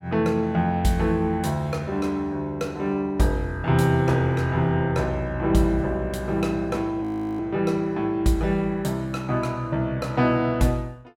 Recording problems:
audio freezing; at 7 s

